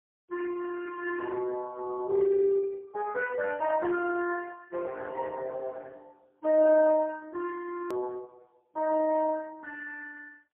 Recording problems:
phone line; 320 Hz to 2.5 kHz, AMR-NB, then MP3
click at an edit; at 8 s

